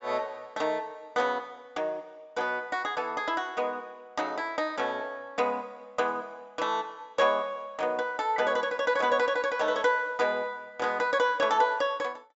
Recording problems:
treble cut off; nothing above 8 kHz

